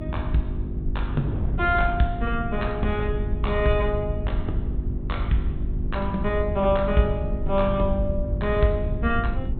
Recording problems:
low-pass filter; nothing above 4 kHz
hum; 50 Hz, harmonics up to 400 Hz, SNR 10 dB
rumble; below 78 Hz, SNR 4 dB
wind on the microphone; below 260 Hz, SNR 13 dB

